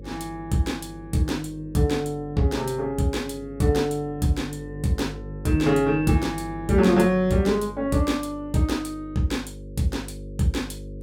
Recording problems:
hum; 50 Hz, harmonics up to 550 Hz, SNR 15 dB

